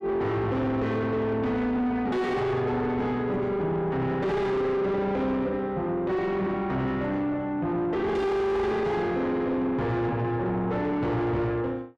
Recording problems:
distorted audio; soft clipping, signal-to-distortion ratio 6 dB

